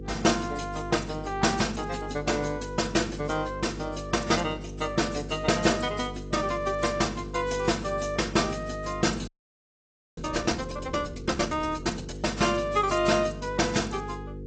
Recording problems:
lossy codec; G.722, then AAC, log-spectral distance 6 dB, nothing above 7.8 kHz
hum; 50 Hz, harmonics up to 500 Hz, SNR 11 dB
frozen audio; at 9.5 s for 1 s

